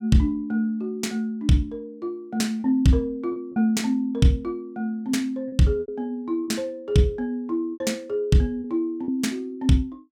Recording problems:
lost packets; 4% of the sound replaced, filled with repeated pitch periods

